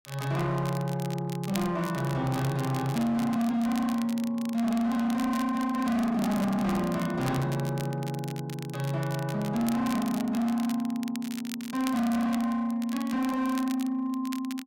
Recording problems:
distorted audio; hard clipping, signal-to-distortion ratio 8 dB
crackle; vinyl, SNR 16 dB

